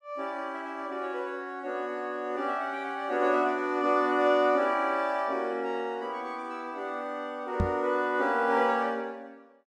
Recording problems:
microphone bump; at 7.5 s; peak +4 dB vs average level

